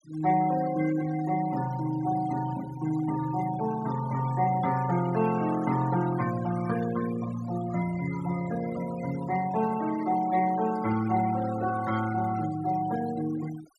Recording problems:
noise reduction artefacts; signal-to-artefact ratio 14 dB

